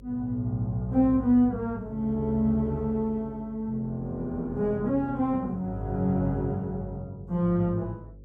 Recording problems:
hum; 50 Hz, harmonics up to 550 Hz, SNR 21 dB

